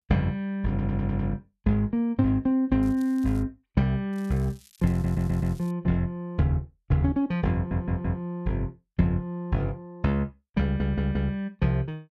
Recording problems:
stutter; 4 times, first at 0.5 s
crackle; at 3 s and from 4 to 5.5 s; loose cable, SNR 27 dB

